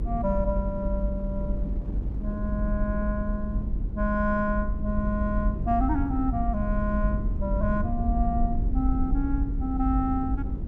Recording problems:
low-frequency rumble; below 68 Hz, SNR 1 dB
wind noise; below 260 Hz, SNR 13 dB

